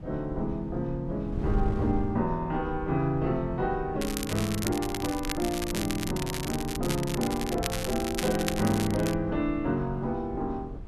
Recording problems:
wind noise; below 110 Hz, SNR 9 dB
crackle; from 4 to 9 s; loose cable, SNR 6 dB

